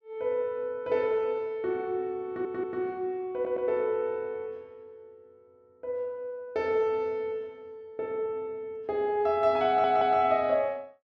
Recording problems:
stutter; at 2.5 s, at 3.5 s and at 9.5 s

